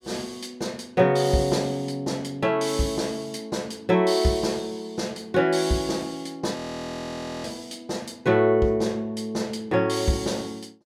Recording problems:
audio freezing; at 6.5 s for 1 s

